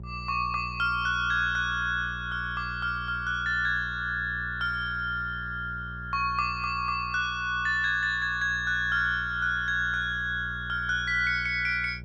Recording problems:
hum; 60 Hz, harmonics up to 600 Hz, SNR 14 dB

